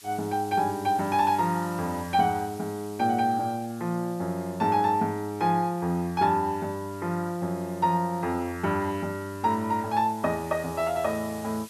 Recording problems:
hiss; slope +3 dB per octave, SNR 21 dB

